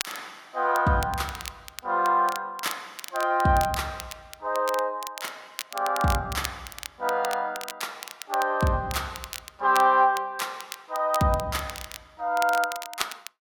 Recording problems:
crackling; vinyl, SNR 13 dB

